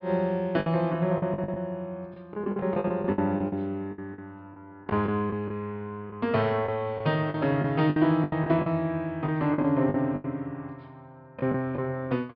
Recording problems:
treble missing; nothing above 5.5 kHz
lost packets; 11% of the sound replaced, filled with the last packet

